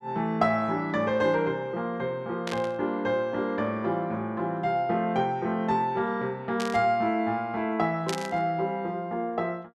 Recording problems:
static burst; at 2.5 s, at 6.5 s and at 8 s; peak -2 dB vs average level

